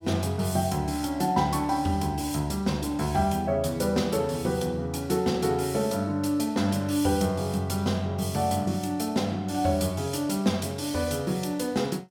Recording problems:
none

